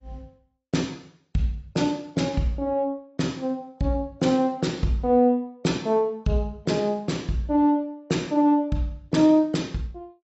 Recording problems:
codec artefacts; AAC, log-spectral distance 2 dB, nothing above 7.8 kHz

